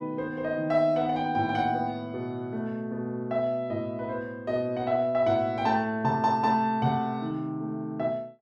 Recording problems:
none

